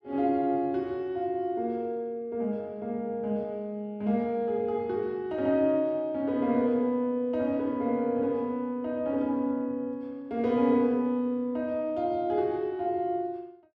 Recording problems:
none

